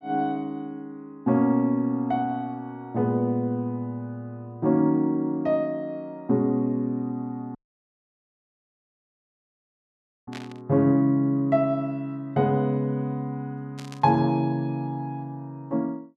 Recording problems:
dropout; at 7.5 s for 2.5 s
static burst; at 10 s and at 14 s; peak -10 dB vs average level

